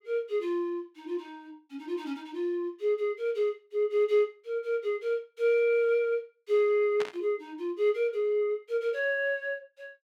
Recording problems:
static burst; at 7 s; peak -4 dB vs average level

